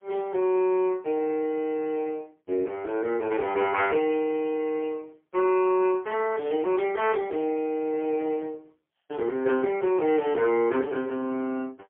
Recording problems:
phone line; 260 Hz to 3.1 kHz, AMR-NB, then MP3

